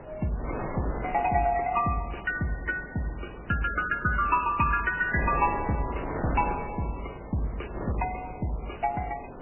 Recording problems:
lossy compression; MP3, log-spectral distance 6 dB, nothing above 2.5 kHz
wind noise; below 820 Hz, SNR 10 dB

